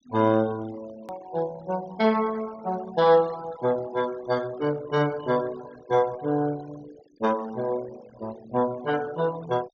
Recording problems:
treble missing; nothing above 6.8 kHz
denoising artefacts; signal-to-artefact ratio 20 dB
click at an edit; at 1 s

